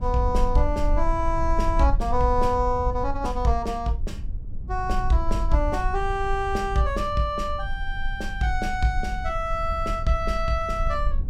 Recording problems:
low-frequency rumble; below 54 Hz, strongest tone 18 Hz, SNR 5 dB

